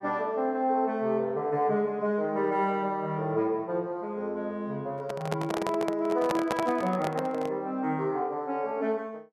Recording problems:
microphone handling noise; from 5 to 7.5 s; peak +3 dB vs average level

